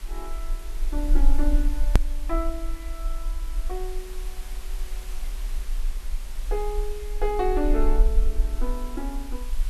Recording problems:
hiss; slope -1 dB per octave, SNR 13 dB
rumble; below 38 Hz, strongest tone 18 Hz, SNR -2 dB
edit click; at 2 s

